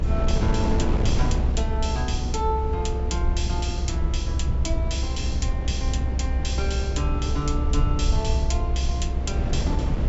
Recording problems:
treble cut off; nothing above 8 kHz
low-frequency rumble; below 66 Hz, SNR -4 dB
wind on the microphone; below 310 Hz, SNR 1 dB

